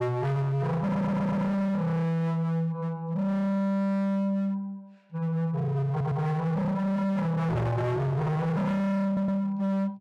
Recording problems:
distortion; hard clipping, signal-to-distortion ratio 6 dB
stutter; at 1 s, at 6 s and at 9 s

